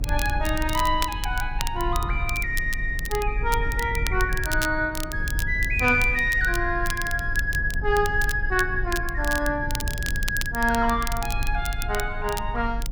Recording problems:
low-frequency rumble; below 66 Hz, strongest tone 22 Hz, SNR 6 dB
crackle; vinyl, SNR 11 dB

